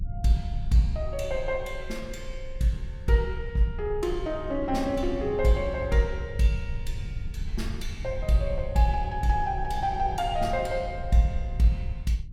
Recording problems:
rumble; below 74 Hz, strongest tone 22 Hz, SNR 9 dB

